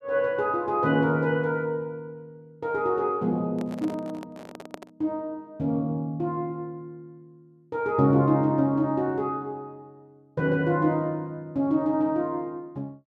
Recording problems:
handling noise; from 3.5 to 5 s; peak -7 dB vs average level

